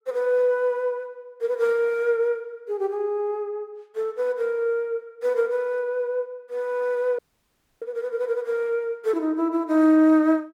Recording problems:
dropout; at 7 s for 0.5 s

